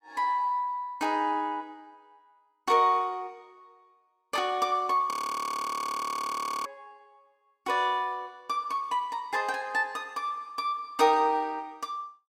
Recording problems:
audio freezing; at 5 s for 1.5 s

